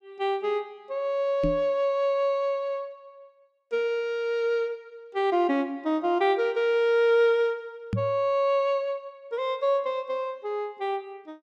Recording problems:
knock on the microphone; at 1.5 s and at 8 s; peak +1 dB vs average level

